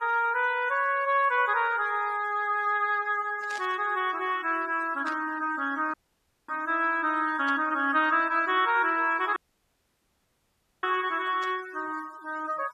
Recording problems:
noise reduction artefacts; signal-to-artefact ratio 21 dB
static burst; 4 times, first at 3.5 s; peak -12 dB vs average level
audio cutting out; at 6 s for 0.5 s and at 9.5 s for 1.5 s

